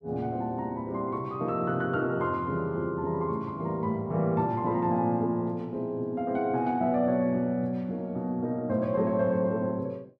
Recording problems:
none

